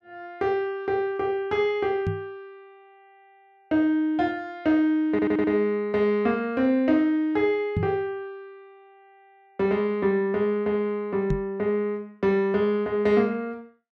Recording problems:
microphone bump; at 2 s, at 8 s and at 11 s; peak +2 dB vs average level
audio stuttering; at 5 s

